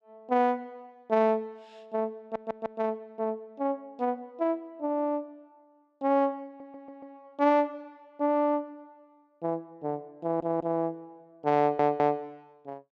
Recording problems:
audio stuttering; 4 times, first at 2 s

